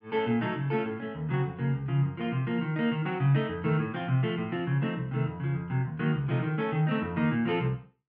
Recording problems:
none

